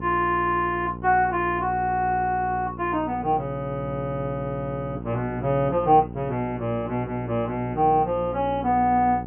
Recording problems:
low-pass filter; nothing above 3.1 kHz
hum; 60 Hz, harmonics up to 960 Hz, SNR 12 dB

